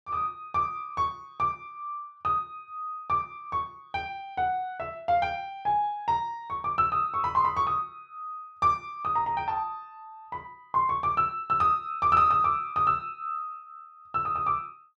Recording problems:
none

